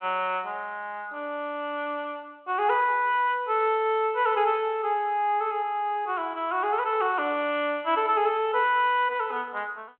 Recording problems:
telephone audio; 220 Hz to 3.4 kHz, G.726

